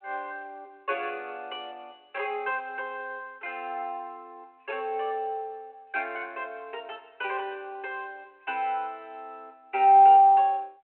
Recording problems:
telephone audio; 300 Hz to 3.1 kHz, G.726

